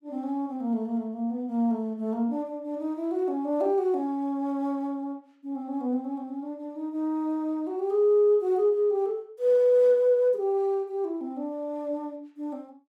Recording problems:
none

